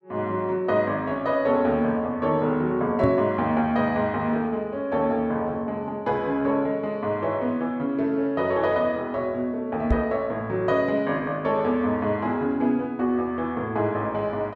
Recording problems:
microphone bump; at 3 s and at 10 s; peak +5 dB vs average level

